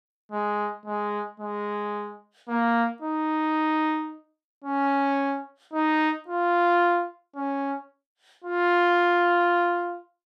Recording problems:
none

